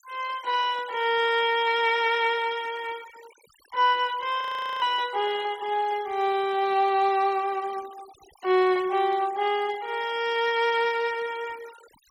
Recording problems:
noise reduction artefacts; signal-to-artefact ratio 21 dB
audio freezing; at 4.5 s

